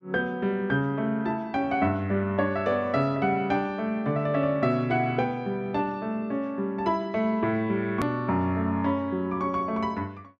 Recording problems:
click at an edit; at 8 s

